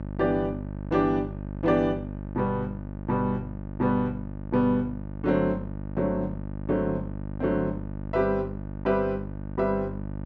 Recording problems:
hum; 50 Hz, harmonics up to 950 Hz, SNR 8 dB

